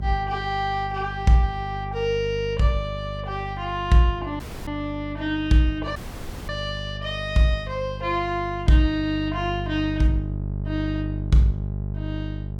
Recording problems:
hum; 50 Hz, harmonics up to 600 Hz, SNR 8 dB
audio cutting out; at 4.5 s and at 6 s for 0.5 s

